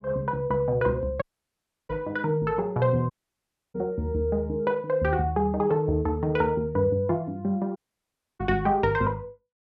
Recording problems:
audio cutting out; at 1 s for 0.5 s, at 3 s for 0.5 s and at 8 s for 0.5 s

